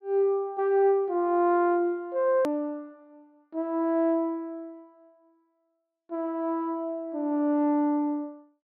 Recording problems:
treble missing; nothing above 5.1 kHz
edit click; at 2.5 s

